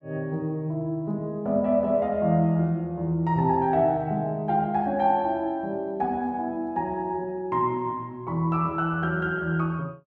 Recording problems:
none

